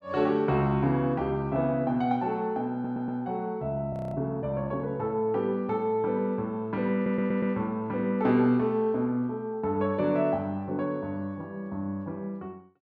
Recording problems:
stutter; at 2.5 s and at 7 s
frozen audio; at 4 s

